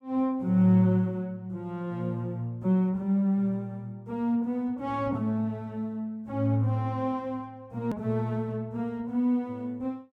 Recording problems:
hard cut with a click; at 8 s

